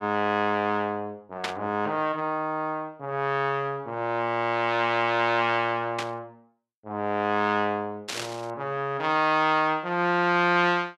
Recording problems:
static burst; at 1.5 s, at 6 s and at 8 s; peak 0 dB vs average level

